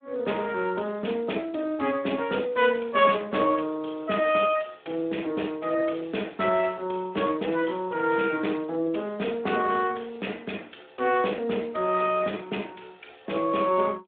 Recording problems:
telephone audio; 220 Hz to 3.6 kHz, Speex

